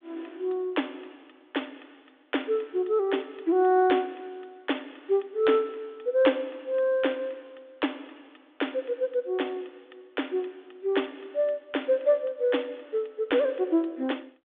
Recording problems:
telephone audio; 220 Hz to 3.6 kHz, G.726

